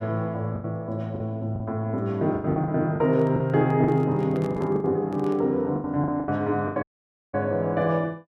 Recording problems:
lost packets; 11% of the sound replaced, filled with the last packet
handling noise; from 3 to 5.5 s; peak -9 dB vs average level
audio cutting out; at 7 s for 0.5 s

